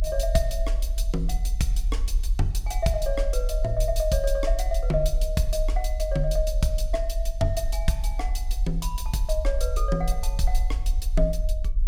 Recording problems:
rumble; below 44 Hz, SNR -1 dB

